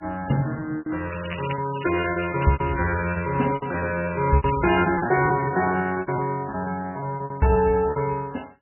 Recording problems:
lossy compression; MP3, log-spectral distance 9 dB, nothing above 2.4 kHz
lost packets; 15% of the sound replaced, filled with repeated pitch periods
crackle; from 1 to 3 s and at 4.5 s; loose cable, SNR 16 dB

